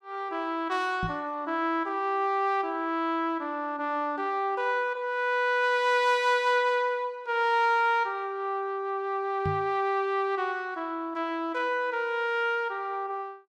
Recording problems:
knock on the microphone; at 1 s and at 9.5 s; peak -1 dB vs average level

